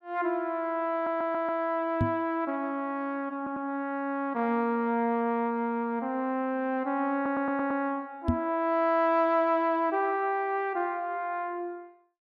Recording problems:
audio stuttering; at 1 s, at 3.5 s and at 7 s
microphone thump; at 2 s and at 8.5 s; peak +6 dB vs average level

